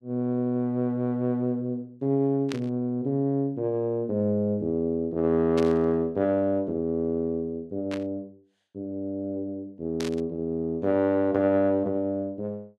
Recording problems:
static burst; 4 times, first at 2.5 s; peak -6 dB vs average level

